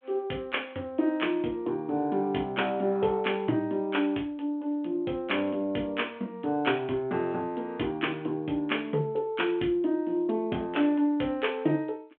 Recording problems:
telephone audio; 190 Hz to 3.4 kHz, G.726

